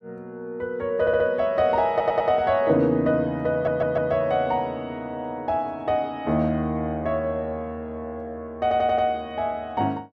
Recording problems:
stutter; 4 times, first at 1 s

